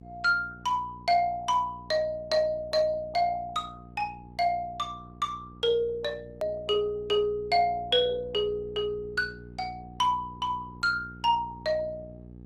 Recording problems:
lossy codec; Opus, log-spectral distance 2 dB, nothing above 15.6 kHz
hum; 60 Hz, harmonics up to 780 Hz, SNR 19 dB
click at an edit; at 6.5 s

